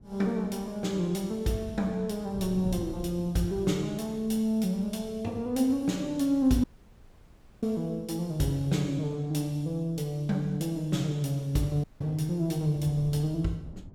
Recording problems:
wind noise; below 180 Hz, SNR 18 dB
audio cutting out; at 6.5 s for 1 s and at 12 s

